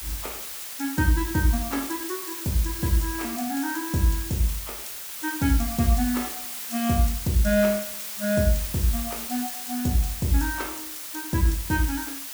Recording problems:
background hiss; slope +2 dB per octave, SNR 6 dB

